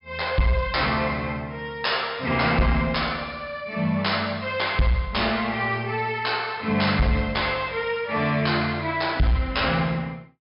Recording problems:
low-pass filter; nothing above 5.5 kHz
distortion; soft clipping, signal-to-distortion ratio 10 dB

